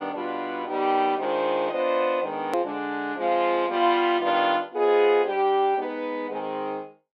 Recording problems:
hard cut with a click; at 2.5 s

